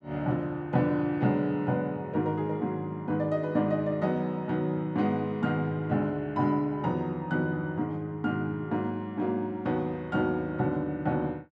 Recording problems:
none

